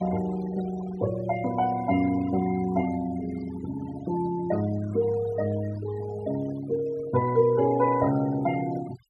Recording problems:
noise reduction artefacts; signal-to-artefact ratio 15 dB

